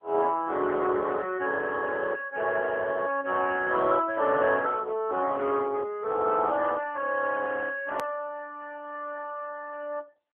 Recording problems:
telephone audio; 300 Hz to 3.3 kHz, AMR-NB
hard cut with a click; at 8 s

